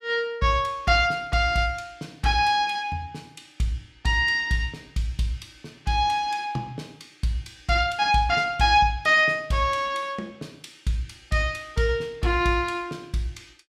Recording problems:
none

